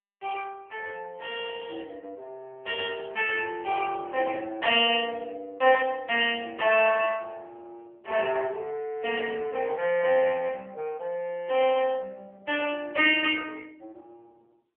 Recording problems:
telephone audio; 320 Hz to 3.2 kHz, AMR-NB

